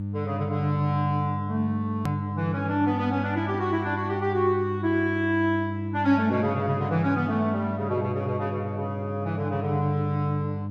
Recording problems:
electrical hum; 50 Hz, harmonics up to 400 Hz, SNR 5 dB
edit click; at 2 s

